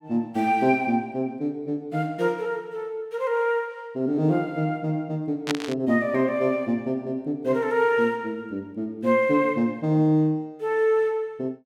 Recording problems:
static burst; at 5.5 s; peak +2 dB vs average level

